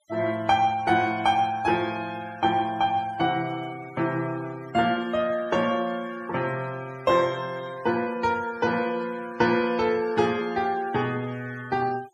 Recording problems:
denoising artefacts; signal-to-artefact ratio 20 dB

